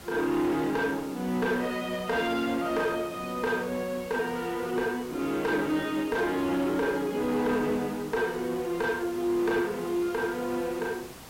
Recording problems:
distortion; soft clipping, signal-to-distortion ratio 11 dB
background hiss; slope -4 dB per octave, SNR 17 dB

